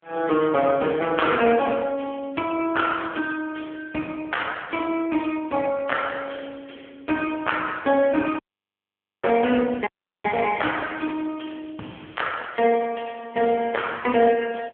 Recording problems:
telephone audio; 190 Hz to 3.3 kHz, AMR-NB
dropout; at 8.5 s for 1 s and at 10 s

